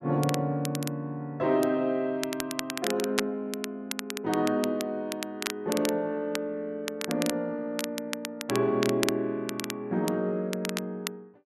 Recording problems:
crackle; vinyl, SNR 7 dB

